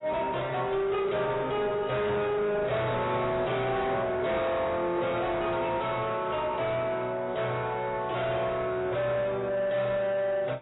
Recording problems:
lossy codec; AAC, log-spectral distance 3 dB, nothing above 3.8 kHz
distorted audio; soft clipping, signal-to-distortion ratio 7 dB

